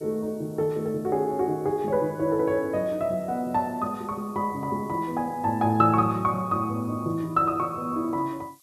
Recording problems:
background hiss; slope +5 dB per octave, SNR 29 dB

